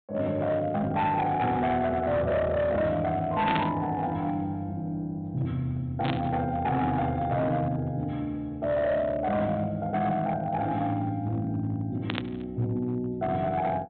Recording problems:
low-pass filter; nothing above 4 kHz
distortion; hard clipping, signal-to-distortion ratio 12 dB
burst of static; at 3.5 s, at 6 s and at 12 s; peak +1 dB vs average level

